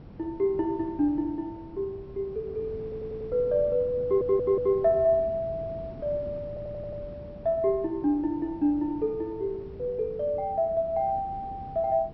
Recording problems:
treble cut off; nothing above 5.6 kHz
wind noise; below 300 Hz, SNR 16 dB
audio stuttering; at 3 s, at 4 s and at 6.5 s

